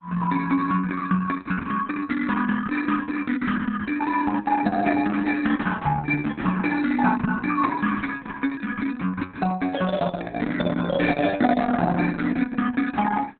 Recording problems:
codec artefacts; Opus, log-spectral distance 5 dB, nothing above 4 kHz

